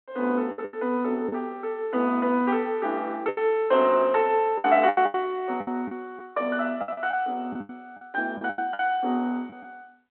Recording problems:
telephone audio; 220 Hz to 3.3 kHz, G.726
packet loss; 10% of the sound replaced, filled with the last packet

